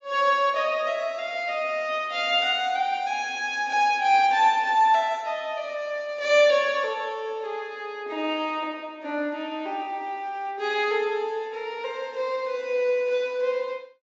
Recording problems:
low-pass filter; nothing above 8 kHz

